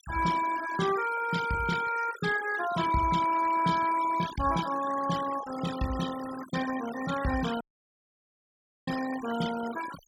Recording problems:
denoising artefacts; signal-to-artefact ratio 12 dB
dropout; at 7.5 s for 1.5 s

